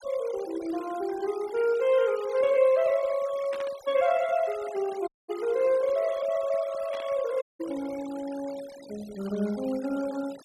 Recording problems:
noise reduction artefacts; signal-to-artefact ratio 19 dB
static burst; at 3.5 s and at 7 s; peak -10 dB vs average level
audio cutting out; at 5 s and at 7.5 s

